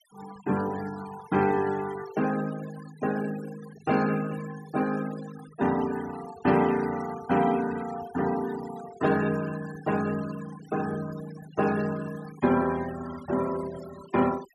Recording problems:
noise reduction artefacts; signal-to-artefact ratio 15 dB

